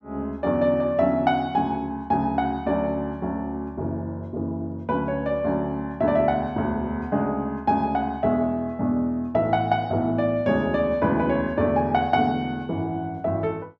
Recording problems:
none

